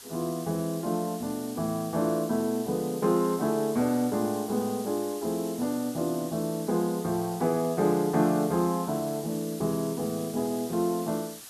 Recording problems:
hiss; SNR 14 dB

